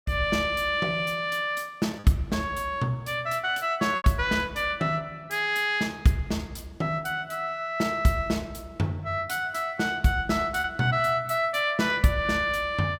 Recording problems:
packet loss; 1.2% of the sound replaced, filled with repeated pitch periods

